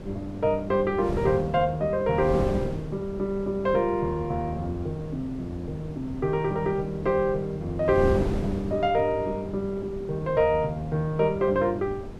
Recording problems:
wind on the microphone; below 350 Hz, SNR 10 dB

